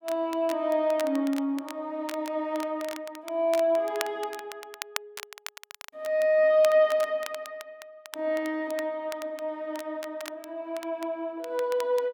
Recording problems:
crackle; vinyl, SNR 15 dB

